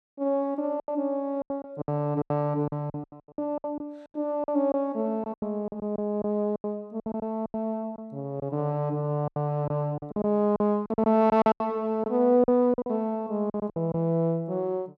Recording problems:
packet loss; 14% of the sound replaced, filled with silence

